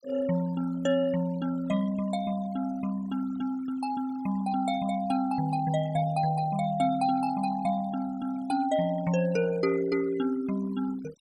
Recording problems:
denoising artefacts; signal-to-artefact ratio 19 dB

